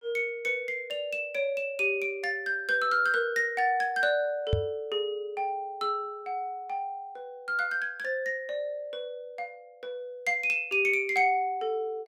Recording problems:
microphone thump; at 4.5 s; peak +5 dB vs average level

